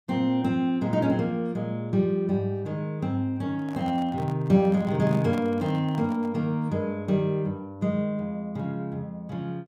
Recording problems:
microphone handling noise; from 3.5 to 6.5 s; peak -9 dB vs average level

